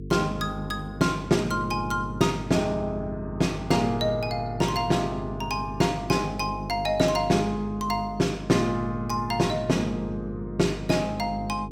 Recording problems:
electrical hum; 50 Hz, harmonics up to 450 Hz, SNR 11 dB

